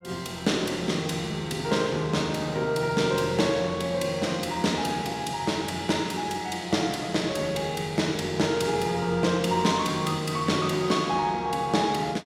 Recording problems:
none

